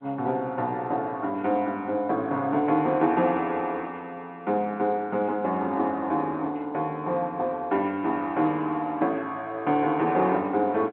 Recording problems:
telephone audio; 190 Hz to 3.4 kHz, G.711

